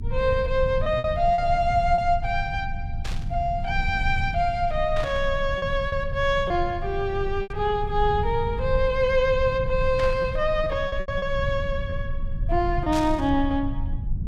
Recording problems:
low-frequency rumble; below 90 Hz, strongest tone 22 Hz, SNR 7 dB
lost packets; 4% of the sound replaced, filled with repeated pitch periods
burst of static; 5 times, first at 3 s; peak -6 dB vs average level

